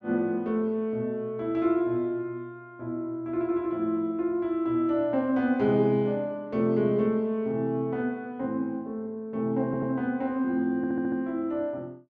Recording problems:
audio stuttering; at 9.5 s and at 11 s

